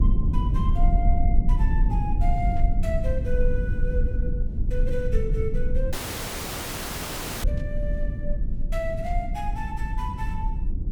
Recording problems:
low-frequency rumble; below 66 Hz, SNR -7 dB
burst of static; at 2.5 s, at 7.5 s and at 9 s; peak -14 dB vs average level
audio cutting out; at 6 s for 1.5 s

